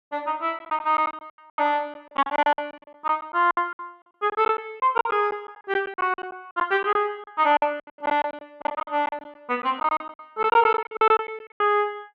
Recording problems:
lost packets; 17% of the sound replaced, filled with silence

